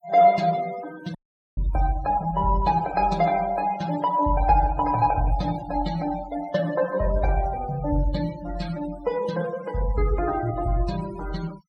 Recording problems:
denoising artefacts; signal-to-artefact ratio 16 dB
dropout; at 1 s

